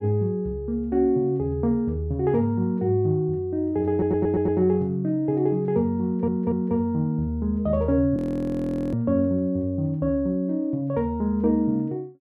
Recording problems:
audio stuttering; at 4 s and at 6 s
frozen audio; at 8 s for 1 s

